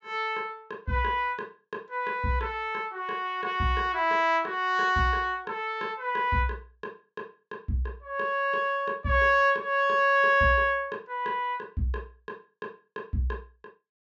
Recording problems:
treble missing; nothing above 7.5 kHz

